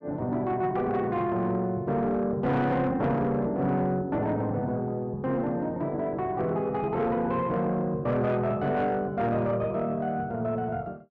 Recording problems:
distorted audio; soft clipping, signal-to-distortion ratio 11 dB

